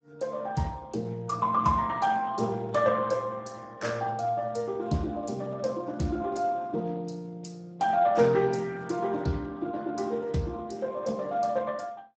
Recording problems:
lossy compression; Speex, log-spectral distance 4 dB, nothing above 7.6 kHz

